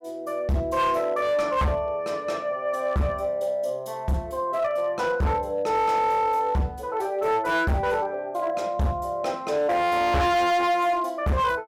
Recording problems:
distorted audio; hard clipping, signal-to-distortion ratio 7 dB

